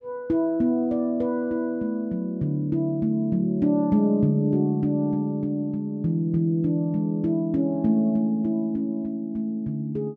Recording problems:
none

